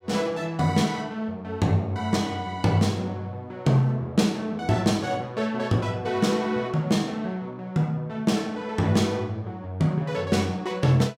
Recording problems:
none

